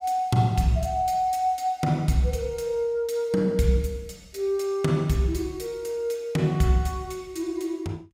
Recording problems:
none

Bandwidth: 16 kHz